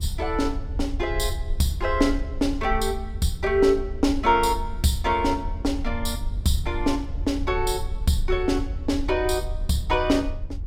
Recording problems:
low-frequency rumble; below 74 Hz, strongest tone 26 Hz, SNR 8 dB

